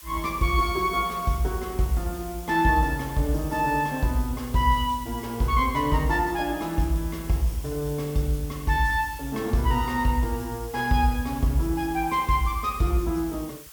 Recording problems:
background hiss; slope +2 dB per octave, SNR 17 dB

